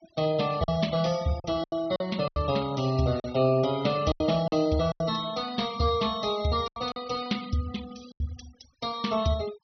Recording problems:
low-pass filter; nothing above 6 kHz
denoising artefacts; signal-to-artefact ratio 17 dB
lost packets; 8% of the sound replaced, filled with silence

